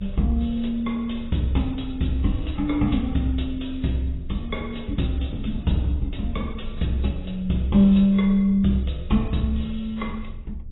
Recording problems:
lossy codec; AAC, log-spectral distance 3 dB, nothing above 3.9 kHz
rumble; below 70 Hz, strongest tone 24 Hz, SNR 15 dB

